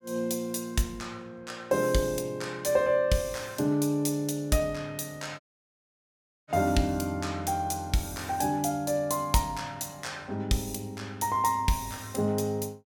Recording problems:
audio cutting out; at 5.5 s for 1 s

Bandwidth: 17 kHz